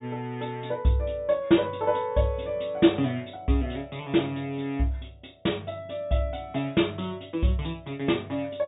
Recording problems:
low-pass filter; nothing above 3.8 kHz

